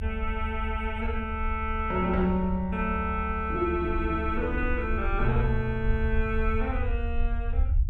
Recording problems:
low-frequency rumble; below 72 Hz, SNR 3 dB

